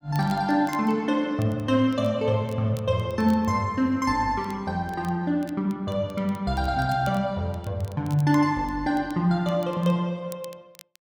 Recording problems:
crackling; vinyl, SNR 26 dB

